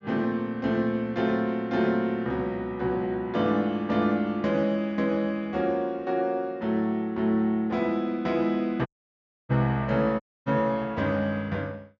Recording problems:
treble missing; nothing above 7 kHz
dropout; at 9 s for 0.5 s and at 10 s

